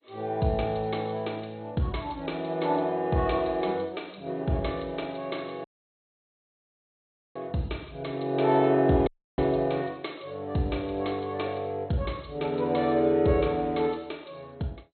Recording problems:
lossy compression; MP2, log-spectral distance 5 dB, nothing above 4.2 kHz
dropout; at 5.5 s for 1.5 s and at 9 s

